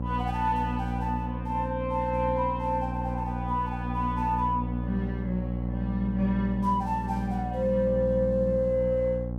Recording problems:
hum; 60 Hz, harmonics up to 840 Hz, SNR 4 dB

